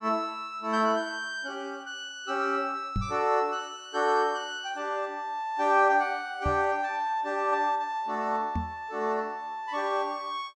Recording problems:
microphone bump; at 3 s, at 6.5 s and at 8.5 s; peak +1 dB vs average level

